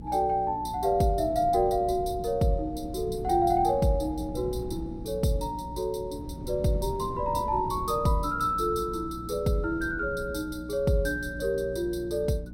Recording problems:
hum; 60 Hz, harmonics up to 300 Hz, SNR 16 dB
wind noise; below 220 Hz, SNR 14 dB

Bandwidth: 16.5 kHz